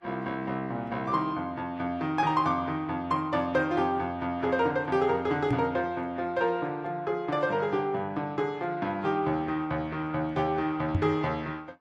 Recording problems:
codec artefacts; Vorbis, log-spectral distance 2 dB
microphone bump; at 5.5 s and at 11 s; peak +4 dB vs average level

